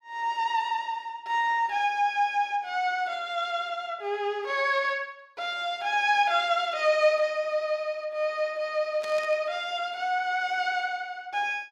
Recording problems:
static burst; at 9 s; peak -10 dB vs average level

